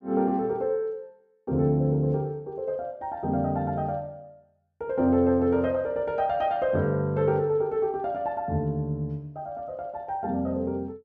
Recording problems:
none

